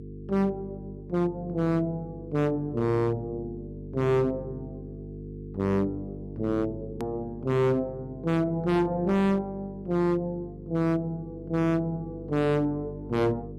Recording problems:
distorted audio; hard clipping, signal-to-distortion ratio 7 dB
electrical hum; 50 Hz, harmonics up to 450 Hz, SNR 13 dB
hard cut with a click; at 7 s

